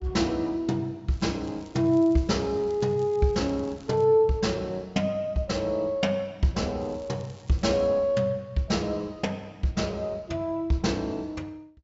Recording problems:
treble cut off; nothing above 8 kHz
crackle; from 1 to 4 s and from 7 to 8 s; loose cable, SNR 28 dB

